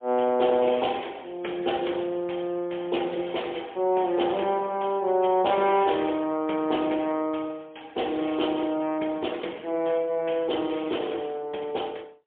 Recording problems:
telephone audio; 220 Hz to 3.5 kHz, AMR-NB, then MP3

